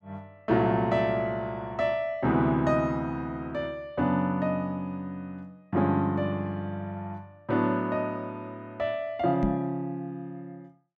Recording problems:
microphone thump; at 9.5 s; peak +3 dB vs average level

